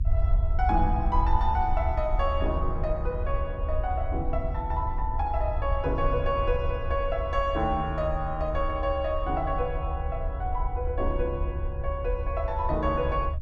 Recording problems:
rumble; below 72 Hz, SNR 2 dB

